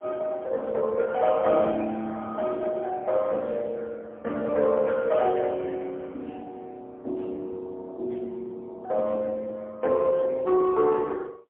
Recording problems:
phone line; 240 Hz to 3.8 kHz, AMR-NB, then MP3

